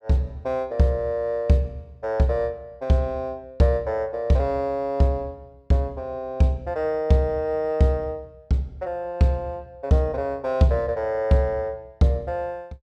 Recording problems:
none

